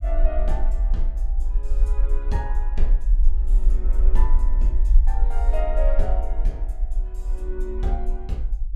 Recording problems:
low-frequency rumble; below 40 Hz, strongest tone 22 Hz, SNR -8 dB

